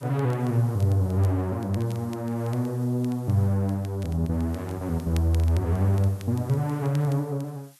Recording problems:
hiss; slope +4 dB per octave, SNR 27 dB
crackle; vinyl, SNR 26 dB

